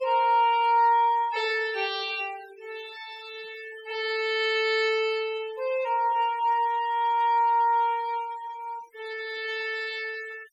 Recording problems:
noise reduction artefacts; signal-to-artefact ratio 20 dB

